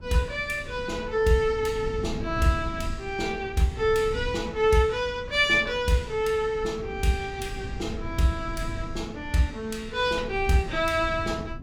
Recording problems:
wind noise; below 140 Hz, SNR 12 dB

